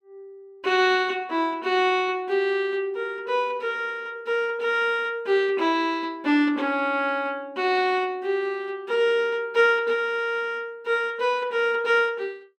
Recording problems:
none

